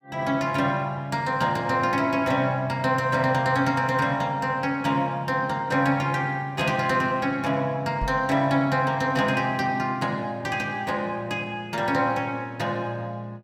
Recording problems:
microphone bump; at 8 s; peak -4 dB vs average level

